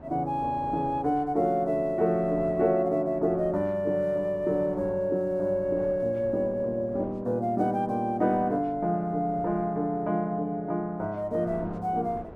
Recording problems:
wind on the microphone; below 590 Hz, SNR 21 dB

